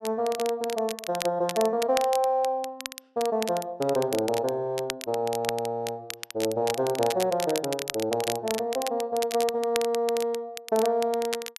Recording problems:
crackle; vinyl, SNR 9 dB

